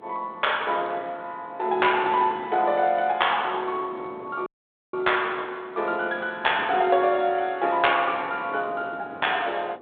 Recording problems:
telephone audio; 300 Hz to 3.6 kHz, G.726
wind on the microphone; below 570 Hz, SNR 19 dB
audio cutting out; at 4.5 s

